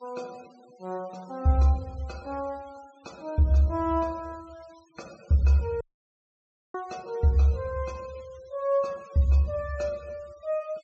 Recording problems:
treble missing; nothing above 8 kHz
denoising artefacts; signal-to-artefact ratio 26 dB
audio cutting out; at 6 s for 1 s

